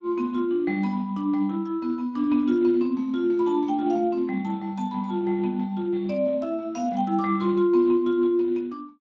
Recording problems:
codec artefacts; MP3, then Speex, log-spectral distance 2 dB

